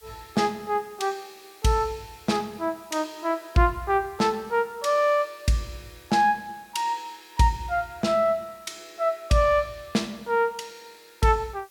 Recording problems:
background hiss; slope +1 dB per octave, SNR 28 dB

